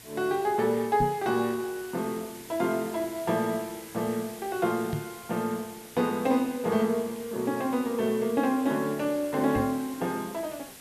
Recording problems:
hiss; SNR 16 dB
microphone thump; at 1 s, at 5 s and at 9.5 s; peak 0 dB vs average level

